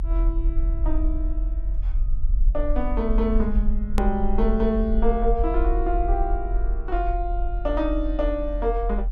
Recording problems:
low-frequency rumble; below 44 Hz, SNR 0 dB
edit click; at 4 s

